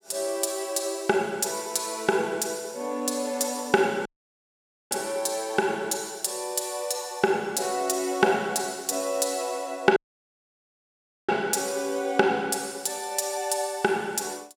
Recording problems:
audio cutting out; at 4 s for 1 s and at 10 s for 1.5 s

